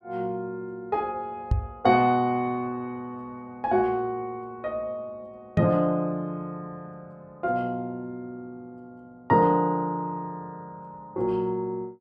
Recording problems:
knock on the microphone; at 1.5 s and at 5.5 s; peak +8 dB vs average level

